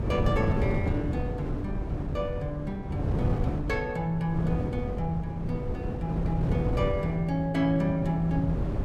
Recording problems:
wind on the microphone; below 230 Hz, SNR 1 dB

